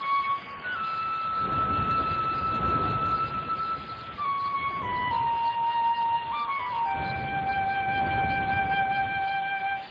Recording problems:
lossy codec; MP3, then Speex, log-spectral distance 11 dB
hiss; SNR 15 dB
wind on the microphone; below 610 Hz, SNR 9 dB

